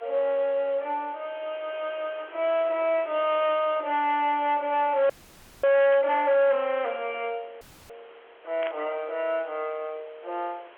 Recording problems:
phone line; 370 Hz to 3.4 kHz, G.711
distortion; hard clipping, uneven, signal-to-distortion ratio 11 dB
background hiss; SNR 24 dB
frozen audio; at 5 s for 0.5 s and at 7.5 s
burst of static; at 6 s and at 8.5 s; peak -7 dB vs average level

